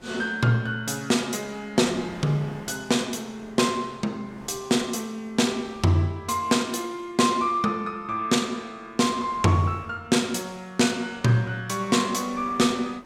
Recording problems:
wind on the microphone; below 1 kHz, SNR 23 dB

